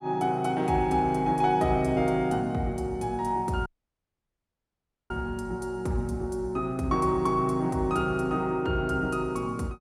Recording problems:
dropout; at 3.5 s for 1.5 s

